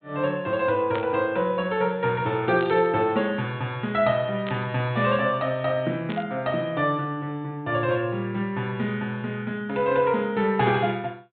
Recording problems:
low-pass filter; nothing above 4 kHz
burst of static; 4 times, first at 1 s; peak -5 dB vs average level

